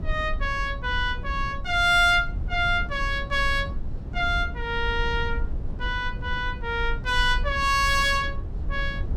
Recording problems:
low-frequency rumble; below 72 Hz, SNR 8 dB

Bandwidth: 17.5 kHz